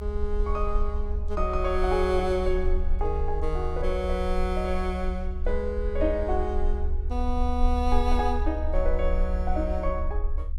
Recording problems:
low-frequency rumble; below 68 Hz, strongest tone 22 Hz, SNR 1 dB

